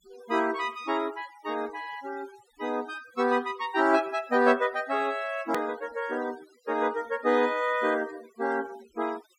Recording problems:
noise reduction artefacts; signal-to-artefact ratio 20 dB
hard cut with a click; at 5.5 s

